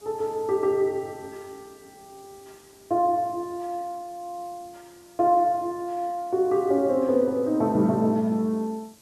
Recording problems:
background hiss; SNR 28 dB

